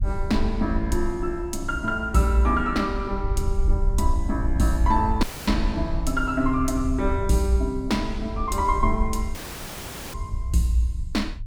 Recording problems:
rumble; below 68 Hz, SNR 5 dB
dropout; at 5 s and at 9.5 s for 1 s

